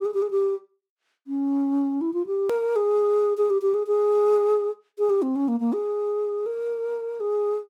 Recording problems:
hard cut with a click; at 2.5 s

